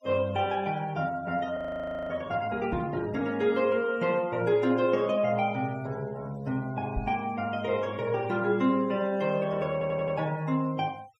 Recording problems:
denoising artefacts; signal-to-artefact ratio 24 dB
audio freezing; at 1.5 s for 0.5 s
microphone thump; at 2.5 s and at 7 s; peak -1 dB vs average level
audio stuttering; at 9.5 s

